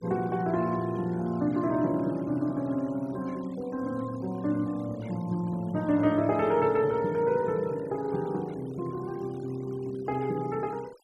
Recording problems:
noise reduction artefacts; signal-to-artefact ratio 24 dB

